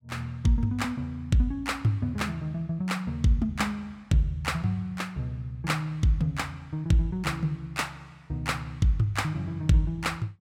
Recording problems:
none

